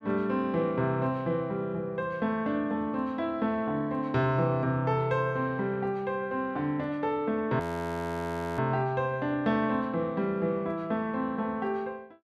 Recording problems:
frozen audio; at 7.5 s for 1 s

